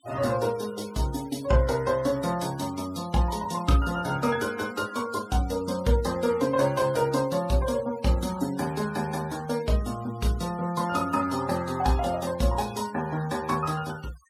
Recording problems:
denoising artefacts; signal-to-artefact ratio 18 dB

